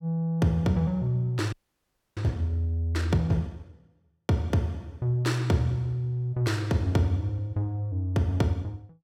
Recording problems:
audio freezing; at 1.5 s for 0.5 s

